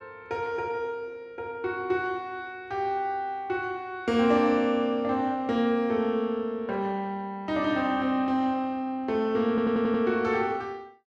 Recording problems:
stutter; at 9.5 s

